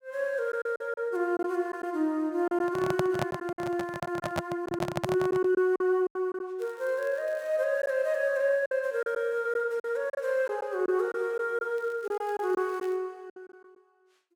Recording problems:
packet loss; 8% of the sound replaced, filled with silence
handling noise; from 2.5 to 5.5 s; peak +4 dB vs average level
crackling; from 6.5 to 7.5 s and from 12 to 13 s; loose cable, SNR 29 dB

